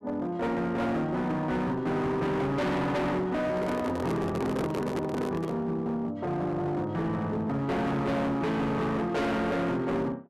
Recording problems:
distortion; hard clipping, signal-to-distortion ratio 6 dB
handling noise; from 3.5 to 5.5 s; peak +1 dB vs average level

